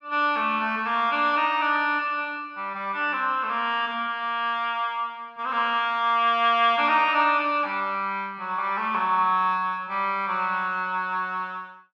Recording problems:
none

